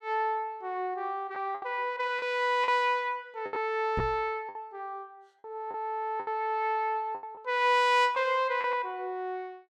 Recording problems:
lost packets; 6% of the sound replaced, filled with the last packet
knock on the microphone; at 4 s; peak -1 dB vs average level

